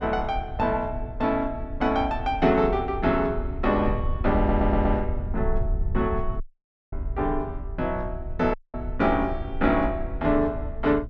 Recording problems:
wind noise; below 72 Hz, SNR 7 dB
audio stuttering; at 4.5 s
dropout; at 6.5 s for 0.5 s and at 8.5 s

